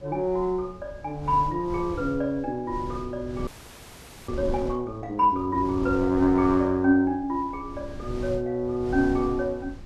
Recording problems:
wind noise; below 140 Hz, SNR 14 dB
audio freezing; at 3.5 s for 1 s

